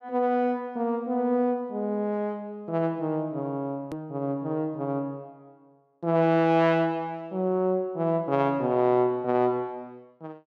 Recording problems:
hard cut with a click; at 4 s

